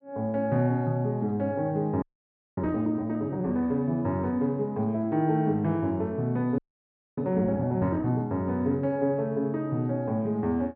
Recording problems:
frozen audio; at 2 s for 0.5 s and at 6.5 s for 0.5 s

